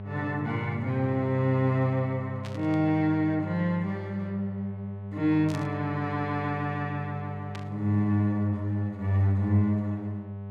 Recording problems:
hum; 50 Hz, harmonics up to 900 Hz, SNR 10 dB
burst of static; at 2.5 s, at 5.5 s and at 7.5 s; peak -10 dB vs average level

